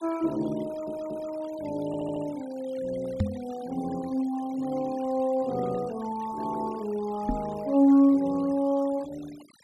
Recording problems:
denoising artefacts; signal-to-artefact ratio 22 dB
stutter; at 0.5 s and at 2 s
microphone thump; at 3 s and at 7.5 s; peak +5 dB vs average level

